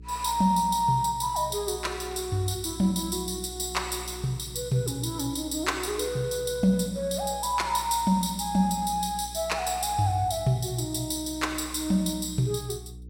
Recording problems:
hum; 60 Hz, harmonics up to 420 Hz, SNR 17 dB

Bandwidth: 16.5 kHz